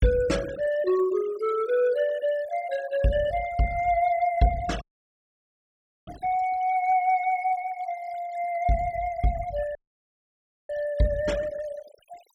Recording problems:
noise reduction artefacts; signal-to-artefact ratio 18 dB
dropout; at 5 s for 1.5 s and at 10 s for 1 s

